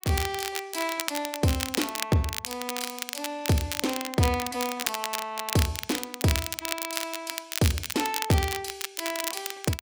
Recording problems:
crackle; vinyl, SNR 3 dB

